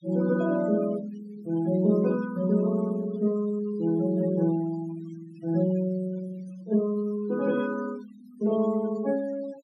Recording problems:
noise reduction artefacts; signal-to-artefact ratio 18 dB

